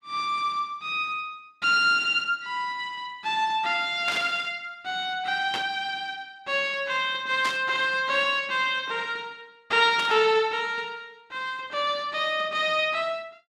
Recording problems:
burst of static; 4 times, first at 4 s; peak -3 dB vs average level

